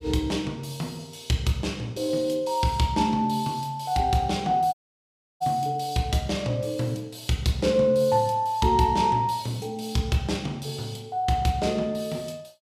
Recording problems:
dropout; at 4.5 s for 0.5 s

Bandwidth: 15.5 kHz